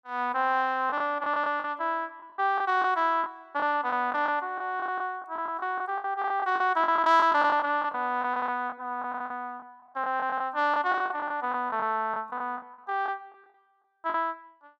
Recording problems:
packet loss; 12% of the sound replaced, filled with the last packet

